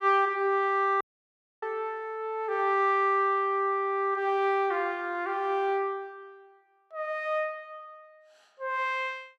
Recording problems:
audio cutting out; at 1 s for 0.5 s

